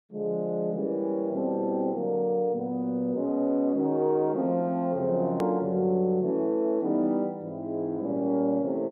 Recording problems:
click at an edit; at 5.5 s

